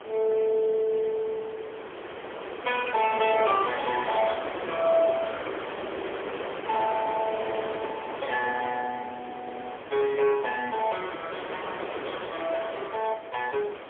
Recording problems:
phone line; 280 Hz to 3.3 kHz, AMR-NB, then MP3
wind on the microphone; below 1.7 kHz, SNR 8 dB

